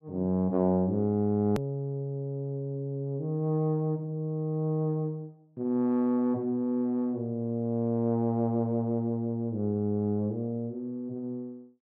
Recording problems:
hard cut with a click; at 1.5 s

